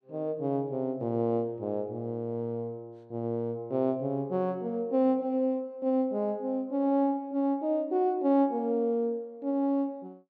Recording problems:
none

